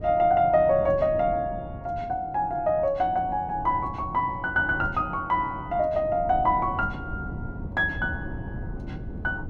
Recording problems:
wind noise; below 230 Hz, SNR 13 dB

